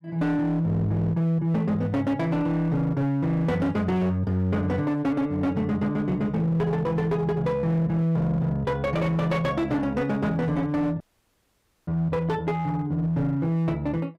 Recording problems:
distortion; hard clipping, uneven, signal-to-distortion ratio 11 dB
audio cutting out; at 11 s for 1 s

